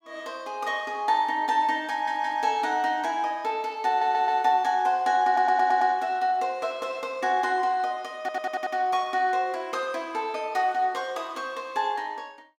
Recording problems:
stutter; 4 times, first at 2 s

